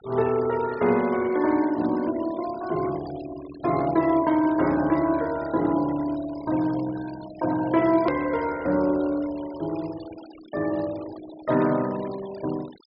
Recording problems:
low-pass filter; nothing above 5.5 kHz
denoising artefacts; signal-to-artefact ratio 19 dB
hard cut with a click; at 8 s

